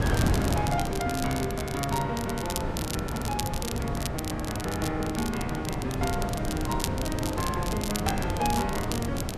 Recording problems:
wind on the microphone; below 390 Hz, SNR 1 dB
crackle; vinyl, SNR 6 dB

